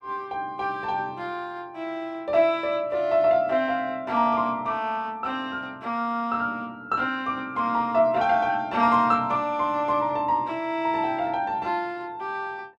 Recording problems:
none

